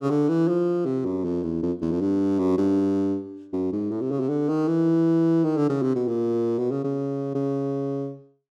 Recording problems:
none

